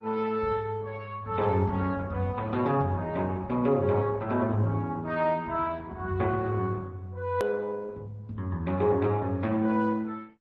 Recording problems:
lossy compression; MP3, then Opus, log-spectral distance 2 dB, nothing above 13.1 kHz
click at an edit; at 7.5 s

